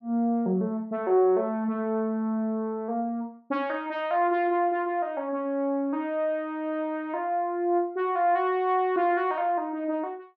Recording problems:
none

